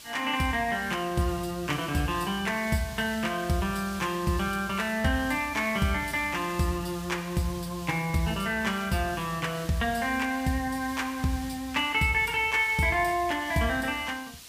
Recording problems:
background hiss; SNR 16 dB

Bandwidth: 15 kHz